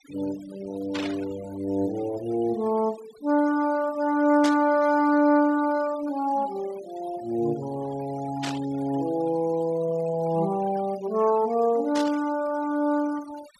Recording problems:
denoising artefacts; signal-to-artefact ratio 20 dB
burst of static; 4 times, first at 1 s; peak -3 dB vs average level

